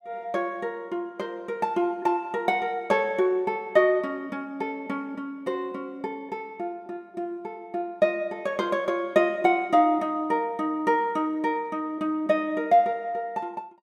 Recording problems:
none

